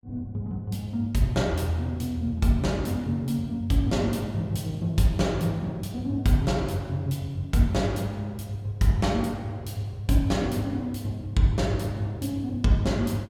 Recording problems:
none

